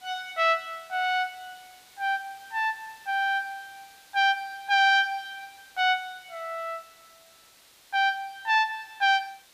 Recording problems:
hiss; slope 0 dB per octave, SNR 26 dB

